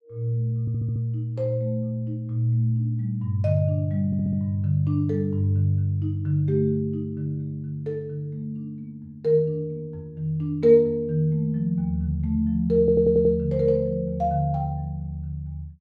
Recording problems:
audio stuttering; at 0.5 s, at 4 s and at 13 s

